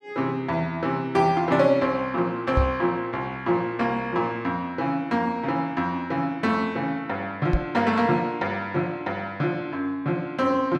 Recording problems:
microphone bump; at 2.5 s and at 7.5 s; peak +5 dB vs average level

